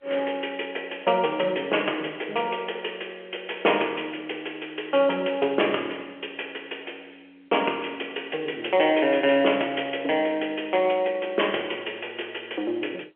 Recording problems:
phone line; 280 Hz to 3.3 kHz, G.711

